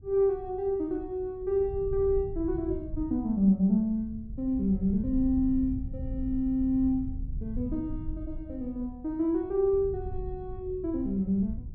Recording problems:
rumble; below 96 Hz, SNR 12 dB

